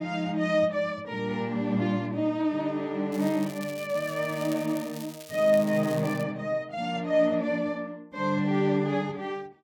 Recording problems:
crackling; from 3 to 6 s; loose cable, SNR 17 dB

